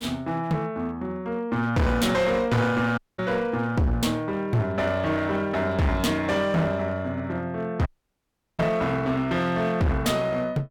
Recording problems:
distorted audio; hard clipping, uneven, signal-to-distortion ratio 6 dB
audio cutting out; at 3 s and at 8 s for 0.5 s

